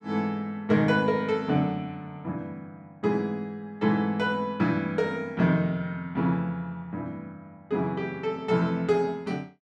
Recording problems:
none

